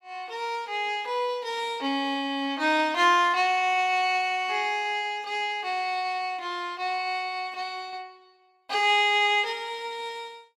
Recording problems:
none

